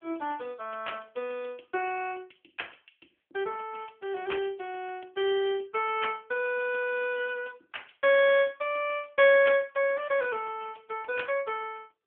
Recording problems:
phone line; 280 Hz to 3.3 kHz, AMR-NB

